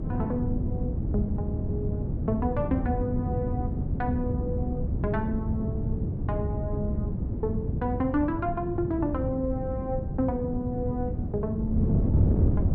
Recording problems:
wind on the microphone; below 180 Hz, SNR -2 dB

